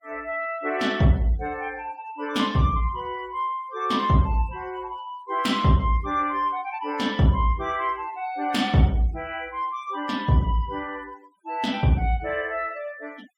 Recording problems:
denoising artefacts; signal-to-artefact ratio 25 dB

